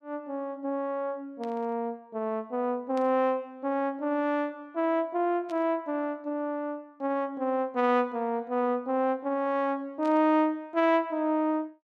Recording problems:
static burst; 4 times, first at 1.5 s; peak -14 dB vs average level

